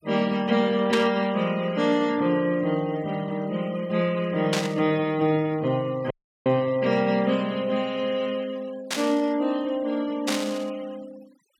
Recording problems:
denoising artefacts; signal-to-artefact ratio 23 dB
burst of static; 4 times, first at 1 s; peak +2 dB vs average level
dropout; at 6 s

